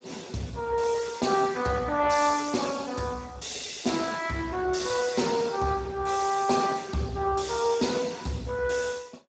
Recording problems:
codec artefacts; Speex, log-spectral distance 6 dB, nothing above 7.6 kHz

